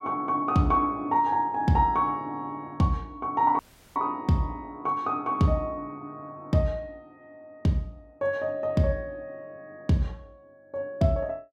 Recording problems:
audio cutting out; at 3.5 s

